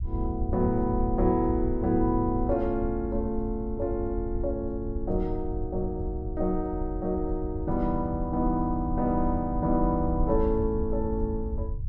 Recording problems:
low-frequency rumble; below 74 Hz, SNR 6 dB

